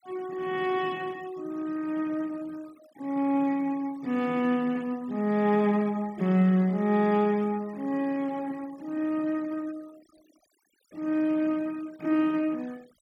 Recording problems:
denoising artefacts; signal-to-artefact ratio 25 dB

